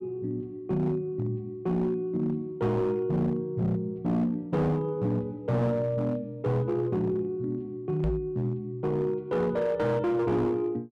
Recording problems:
distorted audio; hard clipping, signal-to-distortion ratio 12 dB
microphone bump; at 8 s; peak +2 dB vs average level

